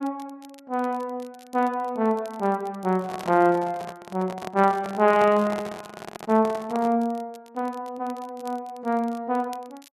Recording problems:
crackling; vinyl, SNR 28 dB
microphone handling noise; from 3 to 7 s; peak -4 dB vs average level

